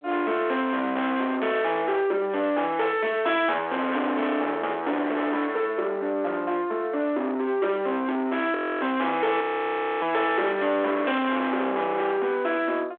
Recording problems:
phone line; 300 Hz to 3.6 kHz, G.726
distortion; soft clipping, signal-to-distortion ratio 7 dB
audio freezing; at 8.5 s and at 9.5 s for 0.5 s

